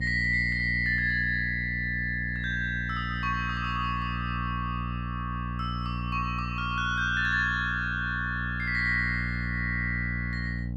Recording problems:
hum; 60 Hz, harmonics up to 540 Hz, SNR 6 dB

